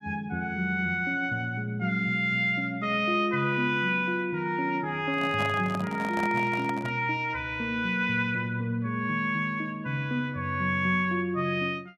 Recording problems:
microphone handling noise; from 5 to 7 s; peak -4 dB vs average level

